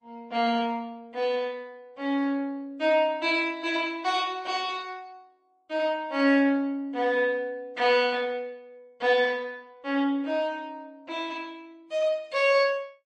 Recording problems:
codec artefacts; Opus, then MP3, log-spectral distance 2 dB, nothing above 8.7 kHz

